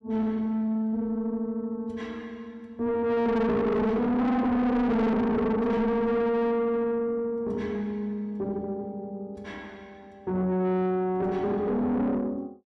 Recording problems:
distorted audio; soft clipping, signal-to-distortion ratio 7 dB

